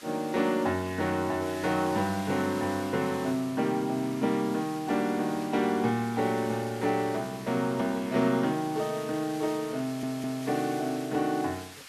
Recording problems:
hiss; SNR 16 dB
stutter; at 10 s

